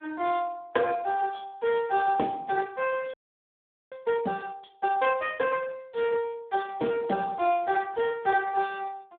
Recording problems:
phone line; 260 Hz to 3.5 kHz, Speex
audio freezing; at 3 s for 1 s

